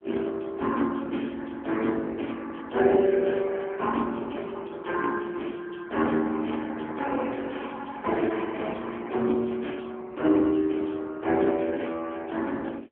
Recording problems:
phone line; 240 Hz to 3.3 kHz, AMR-NB

